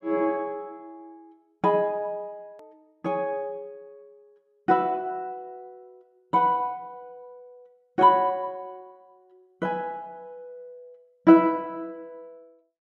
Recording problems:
edit click; at 2.5 s

